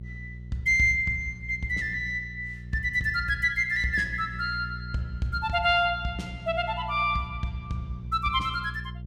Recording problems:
hum; 60 Hz, harmonics up to 420 Hz, SNR 13 dB

